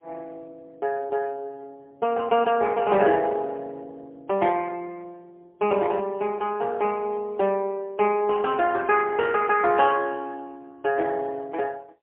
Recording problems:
phone line; 260 Hz to 3.3 kHz, AMR-NB, then MP3

